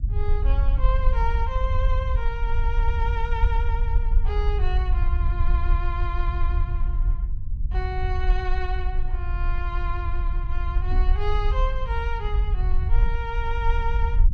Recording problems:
rumble; below 56 Hz, SNR -7 dB
knock on the microphone; at 11 s and at 13 s; peak -1 dB vs average level

